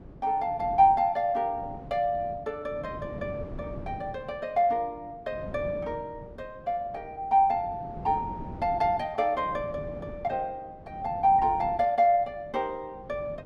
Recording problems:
wind on the microphone; below 340 Hz, SNR 16 dB

